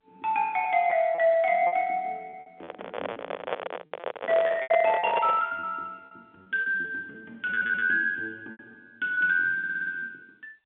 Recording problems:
phone line; 240 Hz to 3.6 kHz, G.711
packet loss; 10% of the sound replaced, filled with repeated pitch periods
microphone handling noise; from 2.5 to 5.5 s; peak 0 dB vs average level
stutter; at 7.5 s and at 9.5 s

